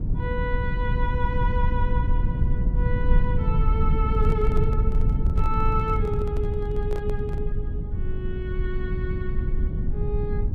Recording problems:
low-frequency rumble; below 90 Hz, SNR -5 dB
microphone handling noise; from 4 to 7.5 s; peak -3 dB vs average level

